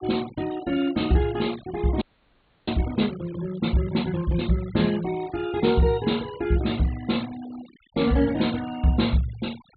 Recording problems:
treble cut off; nothing above 4.4 kHz
noise reduction artefacts; signal-to-artefact ratio 19 dB
audio freezing; at 2 s for 0.5 s

